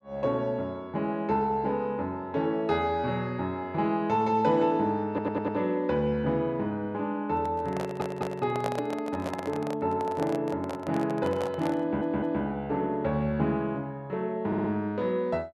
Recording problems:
stutter; 4 times, first at 5 s
handling noise; from 7.5 to 12 s; peak 0 dB vs average level

